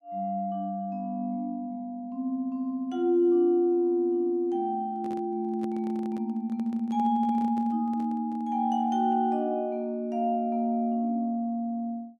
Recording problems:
handling noise; from 5 to 8.5 s; peak -10 dB vs average level

